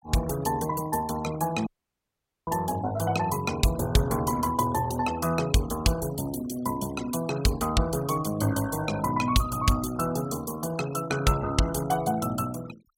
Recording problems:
noise reduction artefacts; signal-to-artefact ratio 17 dB
dropout; at 1.5 s for 1 s

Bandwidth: 16.5 kHz